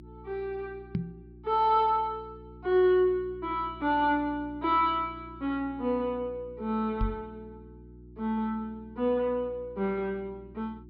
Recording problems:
treble cut off; nothing above 5.5 kHz
hum; 60 Hz, harmonics up to 360 Hz, SNR 20 dB
knock on the microphone; at 1 s and at 7 s; peak +3 dB vs average level

